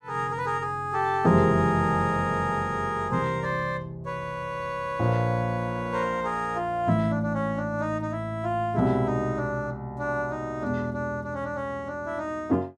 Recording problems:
none

